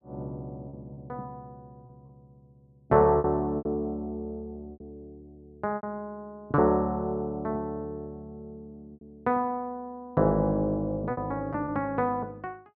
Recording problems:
lost packets; 5% of the sound replaced, filled with repeated pitch periods

